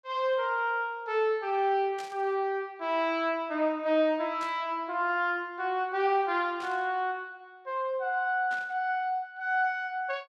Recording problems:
static burst; 4 times, first at 2 s; peak -11 dB vs average level

